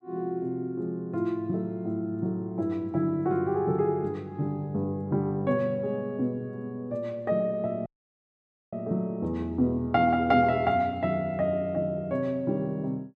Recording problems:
audio cutting out; at 8 s for 1 s

